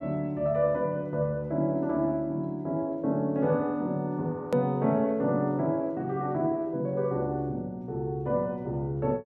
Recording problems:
click at an edit; at 4.5 s

